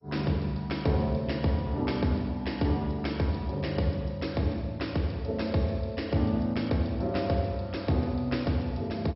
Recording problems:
codec artefacts; MP2, log-spectral distance 4 dB, nothing above 5.5 kHz

